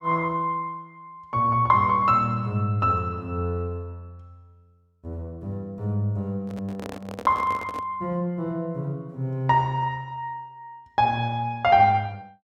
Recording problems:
handling noise; from 6.5 to 8 s; peak -7 dB vs average level

